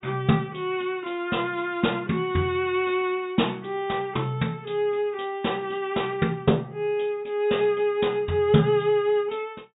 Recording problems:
treble missing; nothing above 4 kHz

